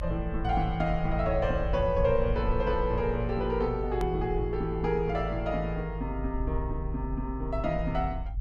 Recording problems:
low-frequency rumble; below 62 Hz, strongest tone 50 Hz, SNR 5 dB
hard cut with a click; at 4 s

